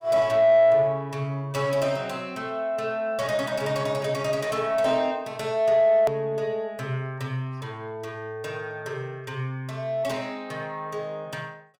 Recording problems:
distortion; soft clipping, signal-to-distortion ratio 12 dB
click at an edit; at 6 s

